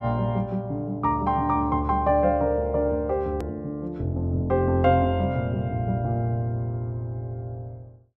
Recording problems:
click at an edit; at 3.5 s

